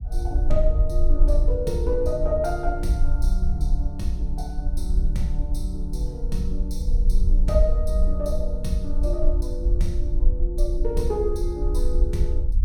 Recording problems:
low-frequency rumble; below 48 Hz, strongest tone 20 Hz, SNR -3 dB

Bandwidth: 17 kHz